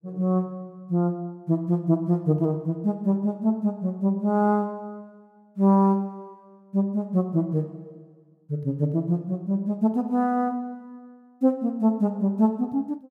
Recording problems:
none

